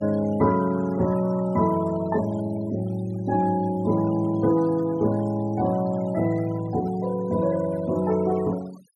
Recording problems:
denoising artefacts; signal-to-artefact ratio 21 dB

